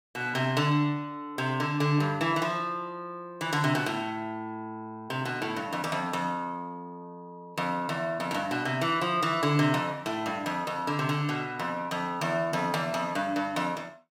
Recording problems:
none

